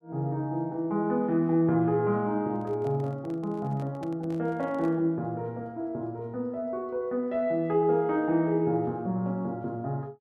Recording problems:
handling noise; from 2.5 to 5 s; peak -11 dB vs average level

